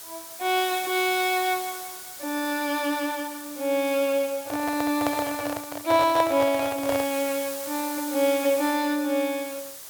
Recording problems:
background hiss; SNR 10 dB
handling noise; from 4.5 to 7 s; peak +1 dB vs average level

